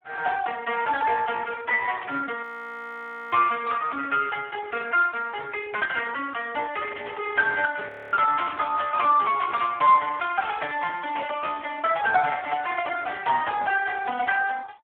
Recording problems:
phone line; 280 Hz to 2.8 kHz, Speex
static burst; at 2 s and at 7 s; peak -10 dB vs average level
audio freezing; at 2.5 s for 1 s and at 8 s

